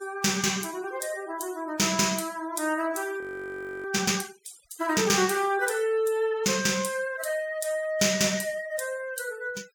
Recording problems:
denoising artefacts; signal-to-artefact ratio 20 dB
audio freezing; at 3 s for 0.5 s

